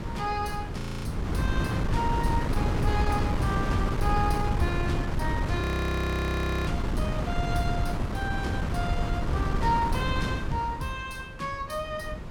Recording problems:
wind noise; below 260 Hz, SNR -3 dB
frozen audio; at 1 s and at 5.5 s for 1 s

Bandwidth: 17 kHz